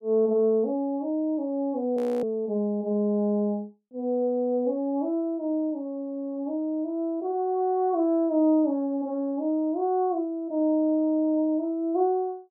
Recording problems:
audio freezing; at 2 s

